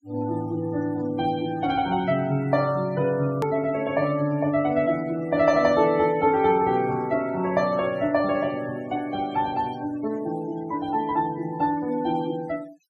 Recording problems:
denoising artefacts; signal-to-artefact ratio 20 dB
click at an edit; at 3.5 s

